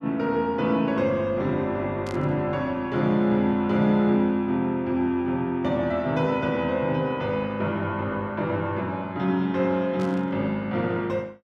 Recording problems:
static burst; at 2 s and at 10 s; peak -15 dB vs average level

